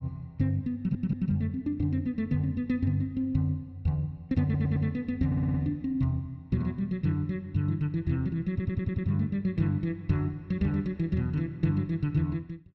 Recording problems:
stutter; 4 times, first at 1 s

